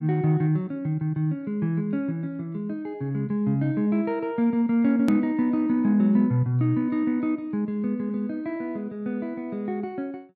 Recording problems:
edit click; at 5 s

